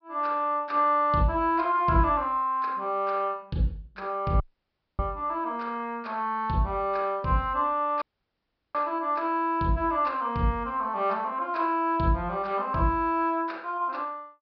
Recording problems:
low-pass filter; nothing above 5.5 kHz
audio cutting out; at 4.5 s for 0.5 s and at 8 s for 0.5 s

